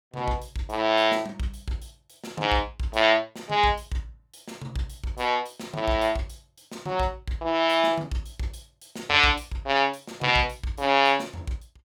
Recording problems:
none

